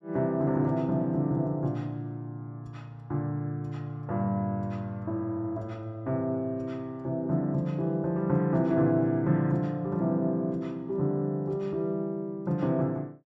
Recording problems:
none

